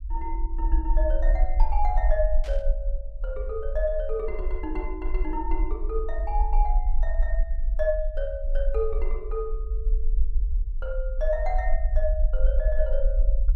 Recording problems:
low-frequency rumble; below 46 Hz, SNR -3 dB
burst of static; at 2.5 s; peak -9 dB vs average level

